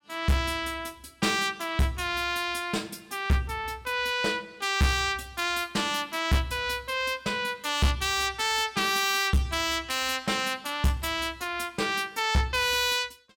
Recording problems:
distorted audio; hard clipping, uneven, signal-to-distortion ratio 10 dB

